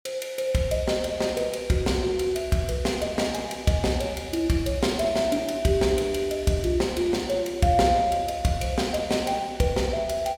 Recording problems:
none

